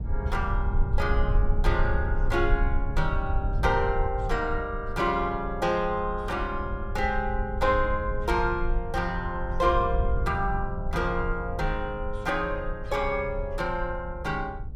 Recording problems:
rumble; below 68 Hz, SNR 4 dB

